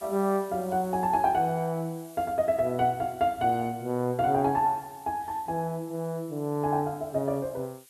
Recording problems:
hiss; slope +3 dB per octave, SNR 24 dB

